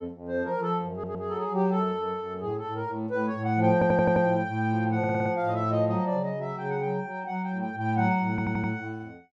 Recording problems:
audio stuttering; 4 times, first at 1 s

